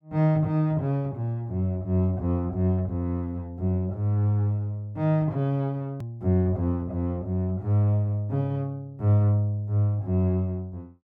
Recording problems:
hard cut with a click; at 6 s

